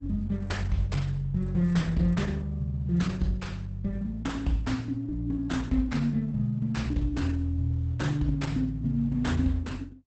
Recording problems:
lossy compression; Opus, log-spectral distance 2 dB, nothing above 8 kHz

